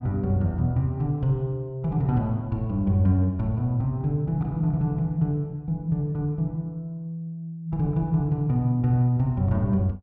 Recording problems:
none

